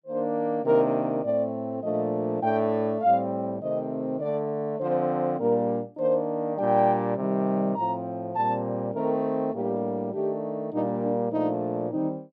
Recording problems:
none

